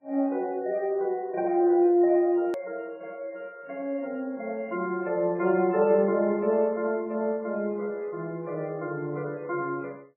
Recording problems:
codec artefacts; MP3, log-spectral distance 2 dB, nothing above 13.1 kHz
edit click; at 2.5 s

